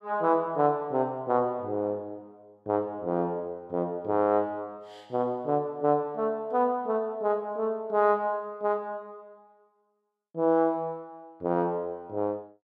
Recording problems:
none

